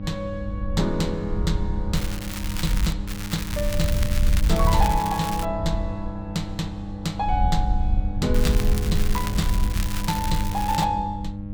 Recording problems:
hum; 50 Hz, harmonics up to 800 Hz, SNR 6 dB
wind on the microphone; below 68 Hz, SNR 0 dB
crackle; at 2 s, from 3 to 5.5 s and from 8.5 to 11 s; loose cable, SNR 6 dB

